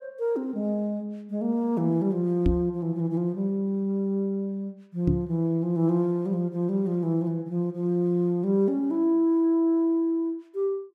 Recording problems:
microphone bump; at 2.5 s and at 5 s; peak +4 dB vs average level

